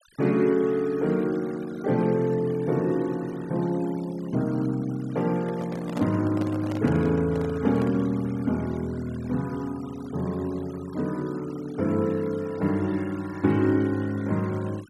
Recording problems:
denoising artefacts; signal-to-artefact ratio 21 dB
handling noise; from 5.5 to 8 s; peak -3 dB vs average level

